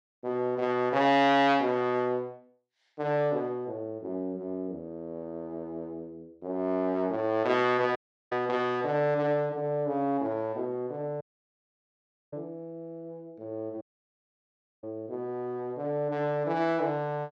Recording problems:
audio cutting out; at 8 s, at 11 s for 1 s and at 14 s for 1 s

